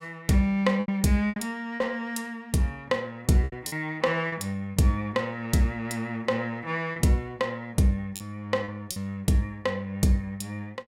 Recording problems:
lost packets; 5% of the sound replaced, filled with repeated pitch periods

